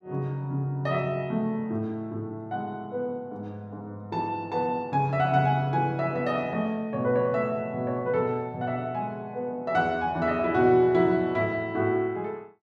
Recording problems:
none

